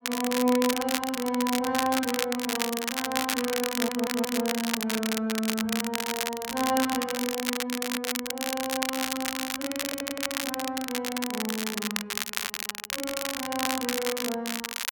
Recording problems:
crackle; vinyl, SNR 1 dB
stutter; at 3.5 s, at 10 s and at 12 s

